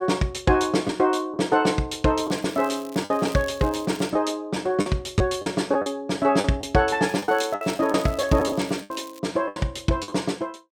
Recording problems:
packet loss; 7% of the sound replaced, filled with the last packet
crackle; from 2 to 4 s and from 7 to 9 s; loose cable, SNR 22 dB

